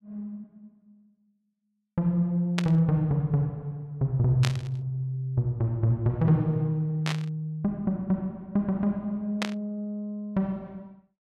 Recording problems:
static burst; 4 times, first at 2.5 s; peak +2 dB vs average level

